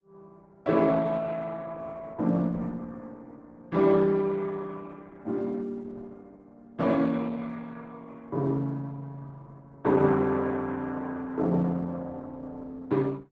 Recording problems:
lossy compression; Opus, log-spectral distance 3 dB

